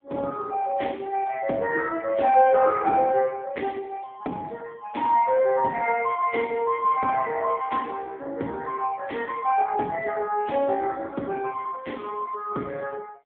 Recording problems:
telephone audio; 190 Hz to 2.7 kHz, AMR-NB

